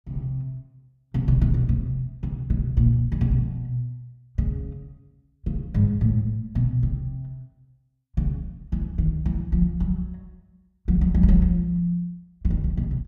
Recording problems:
none

